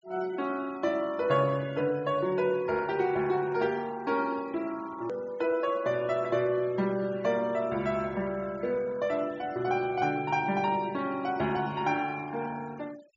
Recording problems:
treble cut off; nothing above 7.3 kHz
noise reduction artefacts; signal-to-artefact ratio 23 dB
click at an edit; at 5 s

